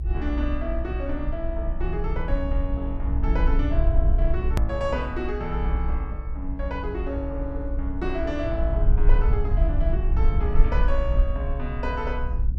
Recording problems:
rumble; below 60 Hz, SNR -4 dB
edit click; at 4.5 s

